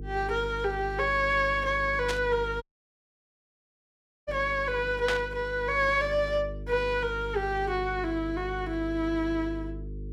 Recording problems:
hum; 50 Hz, harmonics up to 450 Hz, SNR 11 dB
burst of static; at 2 s and at 5 s; peak +1 dB vs average level
audio cutting out; at 2.5 s for 1.5 s

